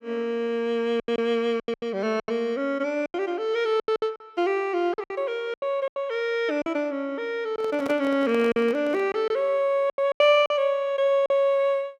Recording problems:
lost packets; 10% of the sound replaced, filled with silence
handling noise; from 7.5 to 9 s; peak -6 dB vs average level

